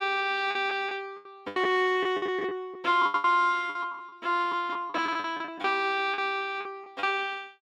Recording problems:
packet loss; 14% of the sound replaced, filled with the last packet

